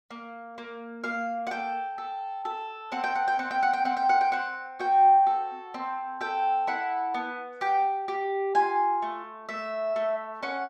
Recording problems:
none

